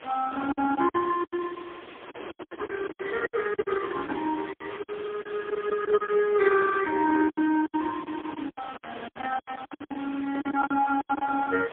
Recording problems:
phone line; 260 Hz to 2.3 kHz, AMR-NB, then MP3
hiss; SNR 18 dB
wind on the microphone; below 1 kHz, SNR 18 dB
packet loss; 16% of the sound replaced, filled with silence

